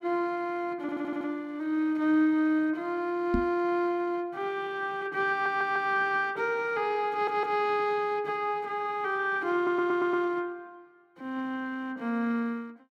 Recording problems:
audio stuttering; 4 times, first at 1 s
microphone thump; at 3.5 s; peak +4 dB vs average level

